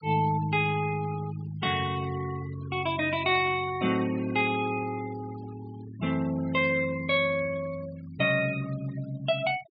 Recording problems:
treble missing; nothing above 5 kHz
denoising artefacts; signal-to-artefact ratio 18 dB

